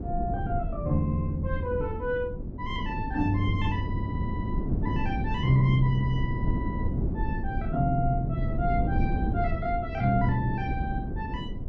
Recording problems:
low-frequency rumble; below 200 Hz, SNR 2 dB

